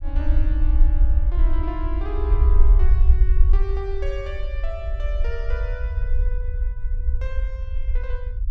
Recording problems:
low-frequency rumble; below 56 Hz, SNR -12 dB

